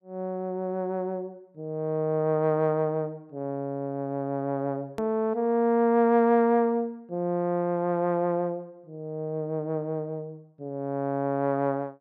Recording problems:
click at an edit; at 5 s

